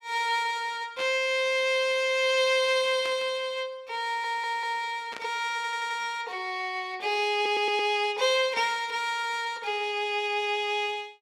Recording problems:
static burst; at 1 s, at 3 s and at 5 s; peak -8 dB vs average level
audio stuttering; at 4 s, at 5.5 s and at 7.5 s

